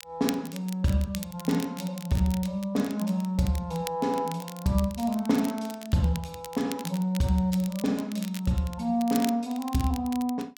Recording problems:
crackling; vinyl, SNR 15 dB

